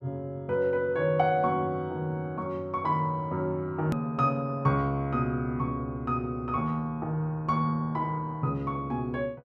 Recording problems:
edit click; at 4 s

